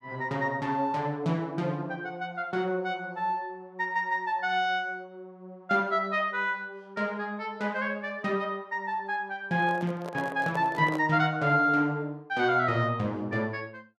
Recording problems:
microphone handling noise; from 9.5 to 11 s; peak -5 dB vs average level

